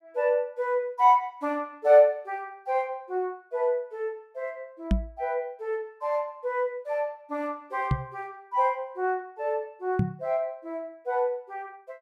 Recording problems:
microphone bump; at 5 s, at 8 s and at 10 s; peak +6 dB vs average level

